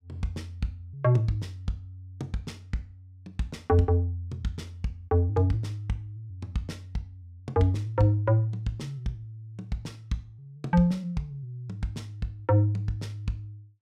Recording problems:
none

